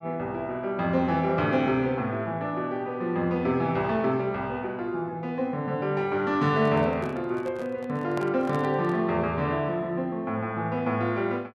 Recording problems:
handling noise; from 6.5 to 9 s; peak -5 dB vs average level

